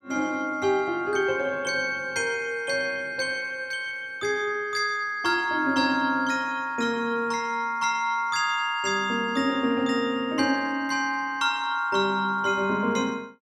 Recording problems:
none

